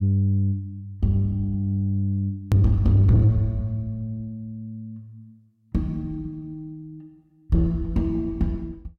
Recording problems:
distorted audio; soft clipping, signal-to-distortion ratio 10 dB
edit click; at 2.5 s

